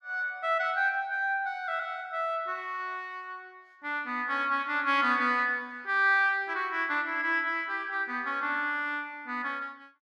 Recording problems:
none

